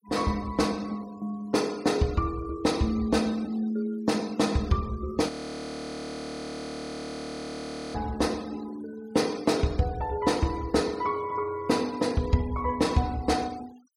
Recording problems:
denoising artefacts; signal-to-artefact ratio 21 dB
frozen audio; at 5.5 s for 2.5 s

